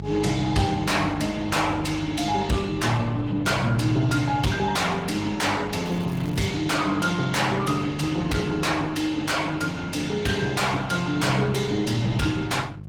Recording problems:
lossy compression; Opus, log-spectral distance 4 dB, nothing above 18.9 kHz
distorted audio; soft clipping, signal-to-distortion ratio 7 dB
hum; 50 Hz, harmonics up to 400 Hz, SNR 13 dB
crackle; at 6 s; loose cable, SNR 23 dB

